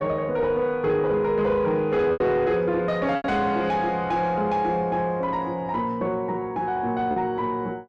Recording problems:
distorted audio; soft clipping, signal-to-distortion ratio 11 dB
lost packets; 3% of the sound replaced, filled with repeated pitch periods

